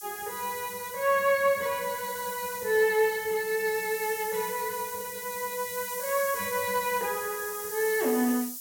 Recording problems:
hiss; SNR 8 dB

